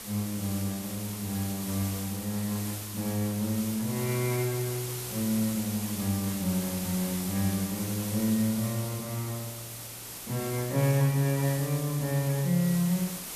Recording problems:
background hiss; slope -1 dB per octave, SNR 7 dB

